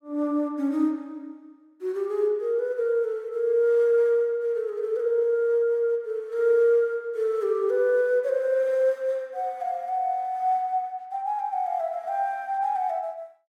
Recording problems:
none

